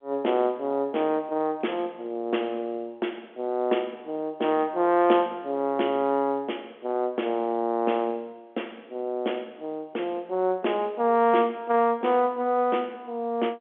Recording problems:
telephone audio; 260 Hz to 3.4 kHz, G.711

